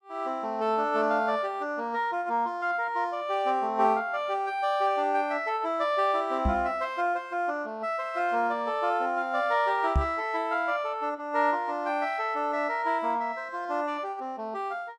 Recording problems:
knock on the microphone; at 6.5 s and at 10 s; peak +5 dB vs average level

